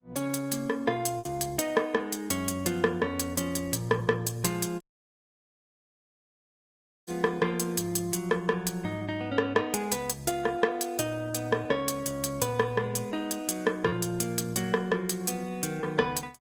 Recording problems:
lossy compression; Opus, log-spectral distance 4 dB, nothing above 18.5 kHz
lost packets; 1.1% of the sound replaced, filled with repeated pitch periods
dropout; at 5 s for 2.5 s

